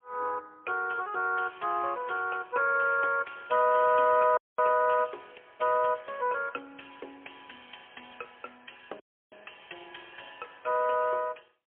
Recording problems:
phone line; 320 Hz to 3.4 kHz, AMR-NB, then MP3
dropout; at 4.5 s and at 9 s

